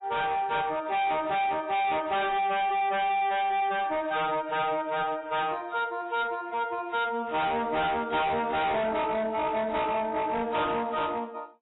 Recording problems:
lossy codec; AAC, log-spectral distance 3 dB, nothing above 3.8 kHz
distortion; hard clipping, signal-to-distortion ratio 6 dB

